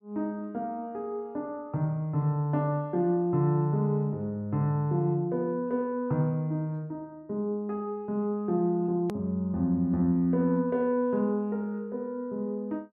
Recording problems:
hard cut with a click; at 9 s

